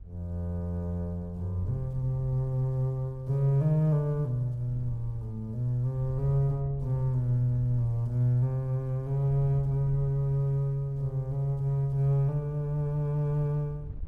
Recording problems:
wind noise; below 82 Hz, SNR 17 dB

